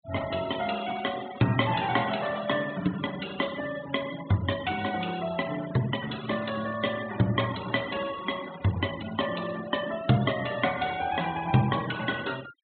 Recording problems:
low-pass filter; nothing above 4 kHz
noise reduction artefacts; signal-to-artefact ratio 14 dB

